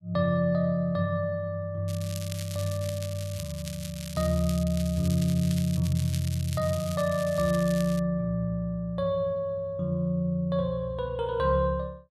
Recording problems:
crackling; from 2 to 8 s; loose cable, SNR 13 dB

